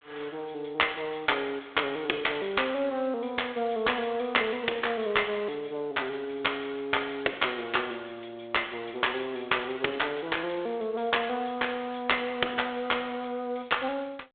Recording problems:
phone line; 300 Hz to 3.6 kHz, G.726

